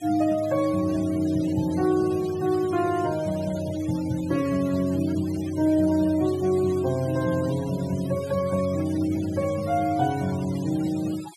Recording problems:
denoising artefacts; signal-to-artefact ratio 19 dB

